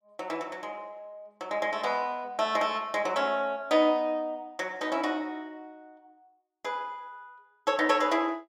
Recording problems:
none

